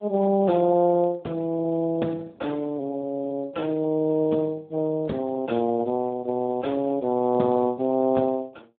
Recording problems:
telephone audio; 150 Hz to 3.7 kHz, Speex

